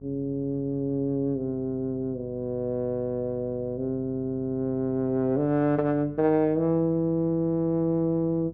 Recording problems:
hum; 50 Hz, harmonics up to 700 Hz, SNR 22 dB

